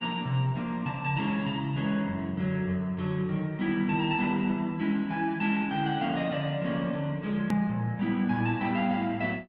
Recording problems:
codec artefacts; Opus, log-spectral distance 2 dB, nothing above 13.1 kHz
edit click; at 7.5 s

